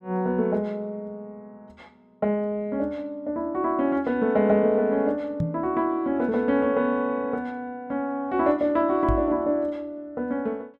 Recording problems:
microphone thump; at 5.5 s and at 9 s; peak +2 dB vs average level

